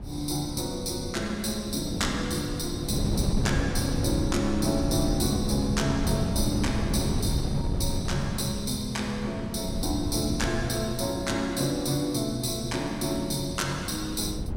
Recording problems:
wind on the microphone; below 200 Hz, SNR 4 dB

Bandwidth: 16 kHz